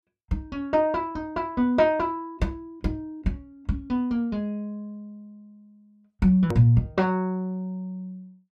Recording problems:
click at an edit; at 6.5 s

